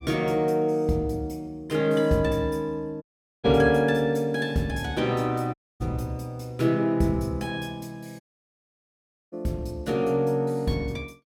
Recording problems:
audio cutting out; at 3 s, at 5.5 s and at 8 s for 1 s

